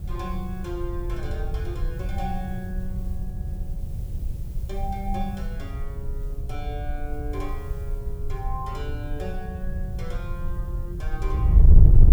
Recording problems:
background hiss; slope +2 dB per octave, SNR 19 dB
wind on the microphone; below 76 Hz, SNR -9 dB

